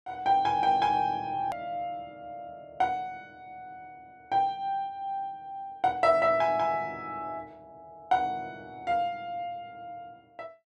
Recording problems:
hard cut with a click; at 1.5 s

